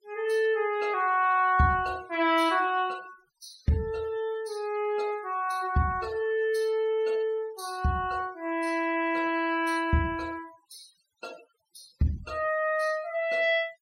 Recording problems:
noise reduction artefacts; signal-to-artefact ratio 23 dB

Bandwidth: 16 kHz